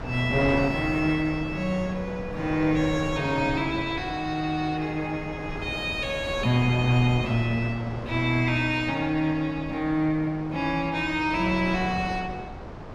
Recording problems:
wind on the microphone; below 760 Hz, SNR 10 dB

